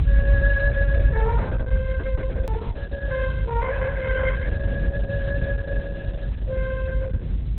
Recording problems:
lossy codec; Opus, log-spectral distance 2 dB
hiss; SNR 21 dB
rumble; below 76 Hz, strongest tone 50 Hz, SNR -7 dB
click at an edit; at 2.5 s

